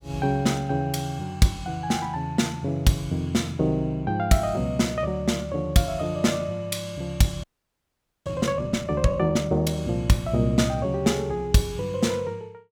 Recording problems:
frozen audio; at 7.5 s for 1 s

